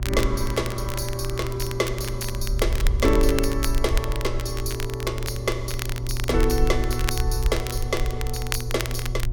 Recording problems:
electrical hum; 60 Hz, harmonics up to 720 Hz, SNR 6 dB
rumble; below 54 Hz, SNR 3 dB
crackling; vinyl, SNR 8 dB

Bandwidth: 18 kHz